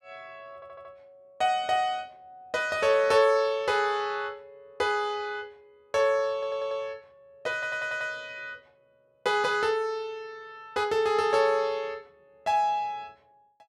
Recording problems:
audio stuttering; at 0.5 s, at 6.5 s and at 7.5 s

